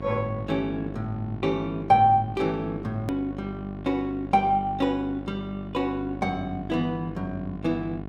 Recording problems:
hum; 50 Hz, harmonics up to 1.4 kHz, SNR 11 dB
click at an edit; at 3 s

